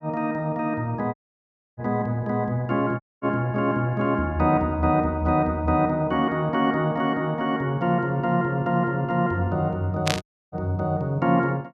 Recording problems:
dropout; at 1 s for 0.5 s, at 3 s and at 10 s
burst of static; at 10 s; peak +3 dB vs average level

